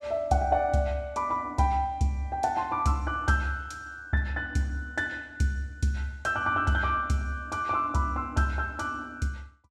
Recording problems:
none

